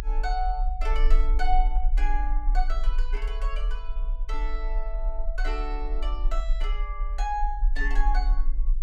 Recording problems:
low-frequency rumble; below 40 Hz, SNR -5 dB

